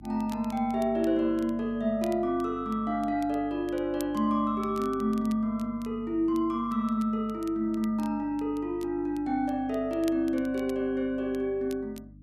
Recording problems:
hum; 50 Hz, harmonics up to 300 Hz, SNR 21 dB
crackling; vinyl, SNR 25 dB

